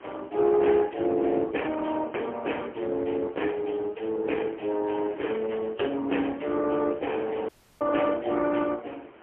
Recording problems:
telephone audio; 240 Hz to 3.2 kHz, AMR-NB, then MP3
wind noise; below 1.6 kHz, SNR 23 dB
audio cutting out; at 7.5 s

